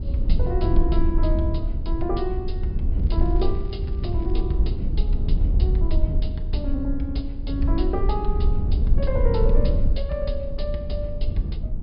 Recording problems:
treble missing; nothing above 5.5 kHz
low-frequency rumble; below 68 Hz, SNR -5 dB
crackle; from 3 to 4.5 s; loose cable, SNR 27 dB

